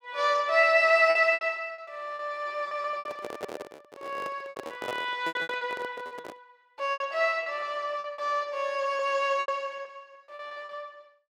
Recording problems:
packet loss; 15% of the sound replaced, filled with repeated pitch periods
microphone handling noise; from 3 to 6.5 s; peak -4 dB vs average level

